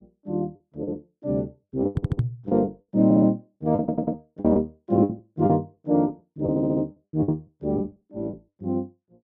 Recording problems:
packet loss; 12% of the sound replaced, filled with the last packet
audio stuttering; 4 times, first at 2 s
microphone thump; at 2 s; peak +6 dB vs average level

